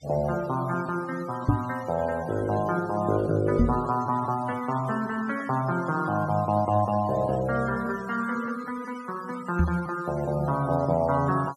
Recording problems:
denoising artefacts; signal-to-artefact ratio 19 dB
knock on the microphone; at 1.5 s, at 3.5 s and at 9.5 s; peak +9 dB vs average level

